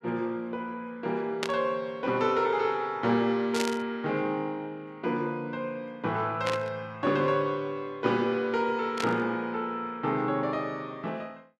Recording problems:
burst of static; 4 times, first at 1.5 s; peak +3 dB vs average level

